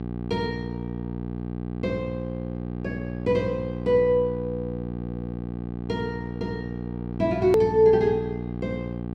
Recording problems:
electrical hum; 60 Hz, harmonics up to 1.2 kHz, SNR 7 dB
edit click; at 7.5 s

